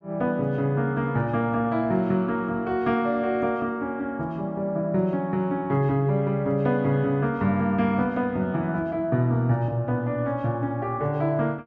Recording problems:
none

